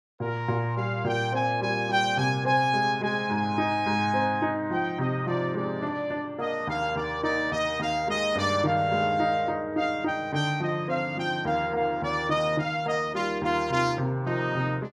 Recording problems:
none

